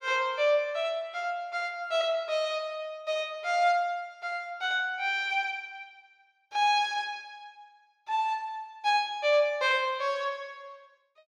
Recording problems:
none

